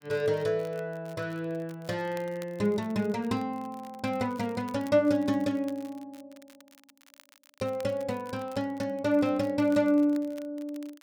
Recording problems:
crackling; vinyl, SNR 26 dB

